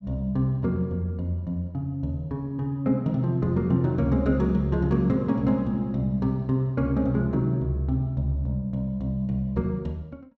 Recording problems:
none

